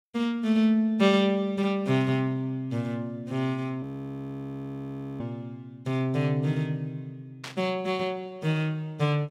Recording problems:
audio freezing; at 4 s for 1.5 s
burst of static; at 7.5 s; peak -6 dB vs average level

